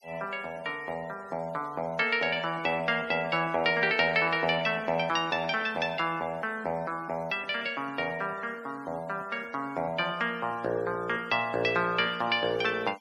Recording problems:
denoising artefacts; signal-to-artefact ratio 25 dB

